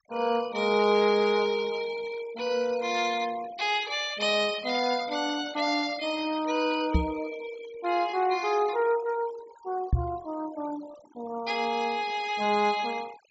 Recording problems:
treble cut off; nothing above 8 kHz
denoising artefacts; signal-to-artefact ratio 17 dB
microphone thump; at 7 s and at 10 s; peak +7 dB vs average level

